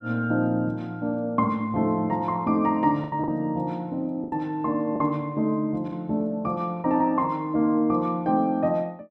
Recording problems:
lost packets; 4% of the sound replaced, filled with the last packet

